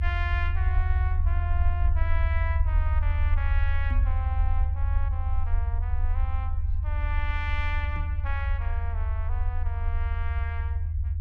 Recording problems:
low-frequency rumble; below 80 Hz, SNR -10 dB
microphone thump; at 4 s and at 8 s; peak +1 dB vs average level

